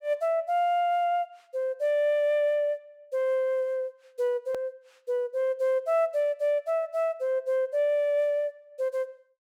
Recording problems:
edit click; at 4.5 s

